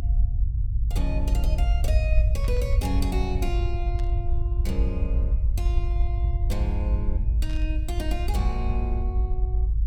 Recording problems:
low-frequency rumble; below 68 Hz, SNR -9 dB
burst of static; at 2.5 s, at 4 s and at 7.5 s; peak -8 dB vs average level

